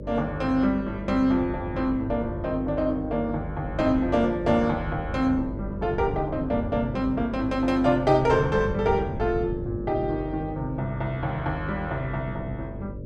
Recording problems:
hum; 50 Hz, harmonics up to 600 Hz, SNR 11 dB
wind on the microphone; below 170 Hz, SNR 13 dB

